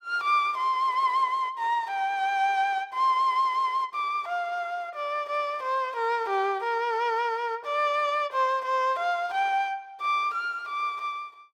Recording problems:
none

